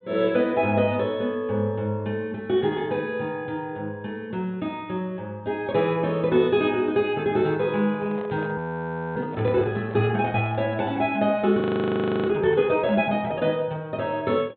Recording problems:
low-pass filter; nothing above 4 kHz
handling noise; from 7.5 to 11 s; peak -12 dB vs average level
frozen audio; at 8.5 s for 0.5 s and at 12 s for 0.5 s

